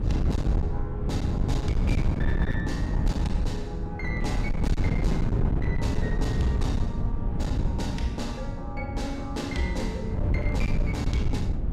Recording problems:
distortion; hard clipping, uneven, signal-to-distortion ratio 13 dB
wind on the microphone; below 140 Hz, SNR -5 dB

